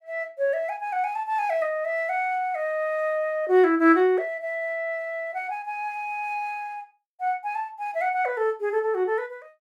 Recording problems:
none

